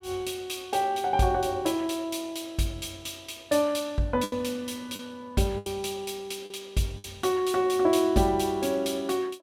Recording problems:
lost packets; 3% of the sound replaced, filled with the last packet

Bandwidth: 16.5 kHz